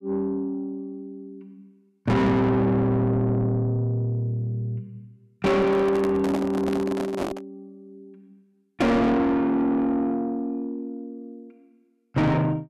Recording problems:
distorted audio; soft clipping, signal-to-distortion ratio 6 dB
handling noise; from 5.5 to 7.5 s; peak 0 dB vs average level

